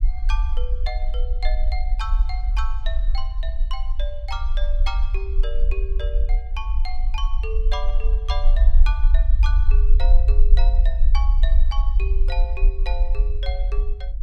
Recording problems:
low-frequency rumble; below 48 Hz, SNR -12 dB

